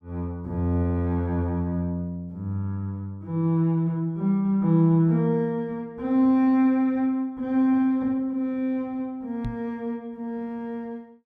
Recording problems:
knock on the microphone; at 9.5 s; peak -4 dB vs average level

